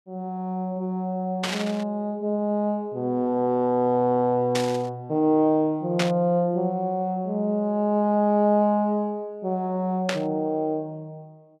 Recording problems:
static burst; 4 times, first at 1.5 s; peak +1 dB vs average level

